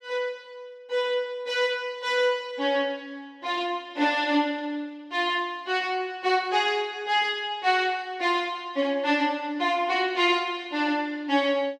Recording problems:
none

